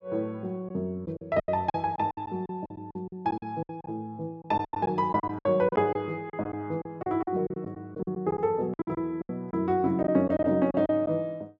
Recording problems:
lost packets; 13% of the sound replaced, filled with silence

